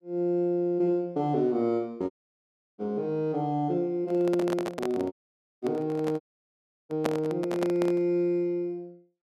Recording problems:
audio cutting out; at 2 s for 0.5 s, at 5 s for 0.5 s and at 6 s for 0.5 s
handling noise; from 4 to 8 s; peak +3 dB vs average level

